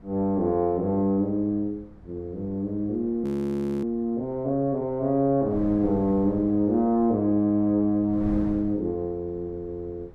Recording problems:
wind on the microphone; below 220 Hz, SNR 19 dB
frozen audio; at 3 s for 0.5 s

